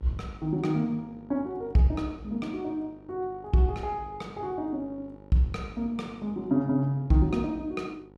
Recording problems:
hum; 50 Hz, harmonics up to 1.4 kHz, SNR 21 dB

